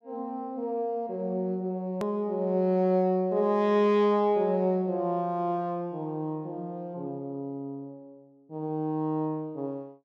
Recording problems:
edit click; at 2 s

